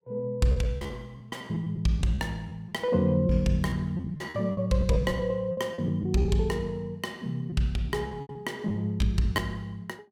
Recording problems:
packet loss; 11% of the sound replaced, filled with repeated pitch periods

